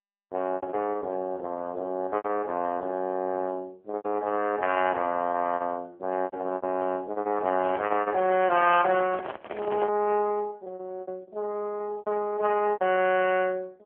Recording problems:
telephone audio; 240 Hz to 3.1 kHz, AMR-NB
lost packets; 11% of the sound replaced, filled with repeated pitch periods
microphone handling noise; from 7.5 to 10 s; peak -4 dB vs average level

